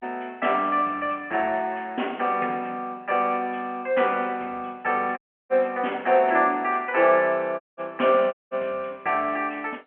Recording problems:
telephone audio; 240 Hz to 3.2 kHz, G.711
dropout; at 5 s, at 7.5 s and at 8.5 s

